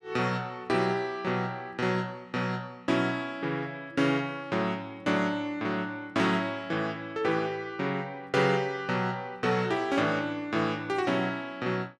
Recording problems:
none

